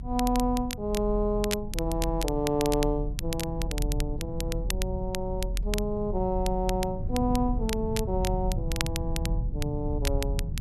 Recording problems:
rumble; below 82 Hz, strongest tone 42 Hz, SNR 4 dB
wind on the microphone; below 180 Hz, SNR 14 dB
crackle; vinyl, SNR 8 dB

